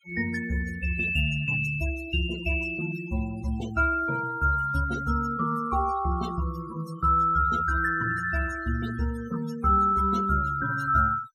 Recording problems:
noise reduction artefacts; signal-to-artefact ratio 16 dB

